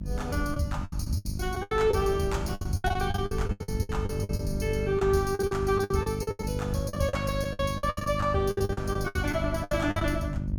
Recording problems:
electrical hum; 50 Hz, harmonics up to 650 Hz, SNR 6 dB
low-frequency rumble; below 100 Hz, SNR 8 dB
lost packets; 19% of the sound replaced, filled with the last packet

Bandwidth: 17 kHz